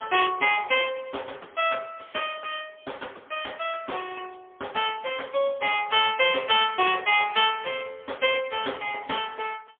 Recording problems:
telephone audio; 300 Hz to 3.5 kHz, AMR-NB, then MP3

